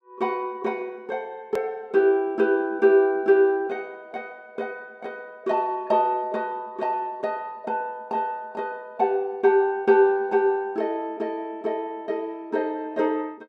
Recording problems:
click at an edit; at 1.5 s

